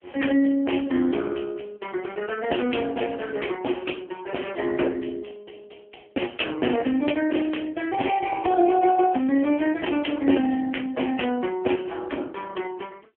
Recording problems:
telephone audio; 220 Hz to 3.2 kHz, AMR-NB

